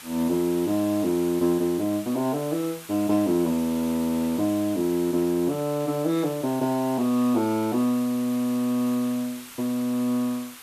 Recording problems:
background hiss; SNR 16 dB

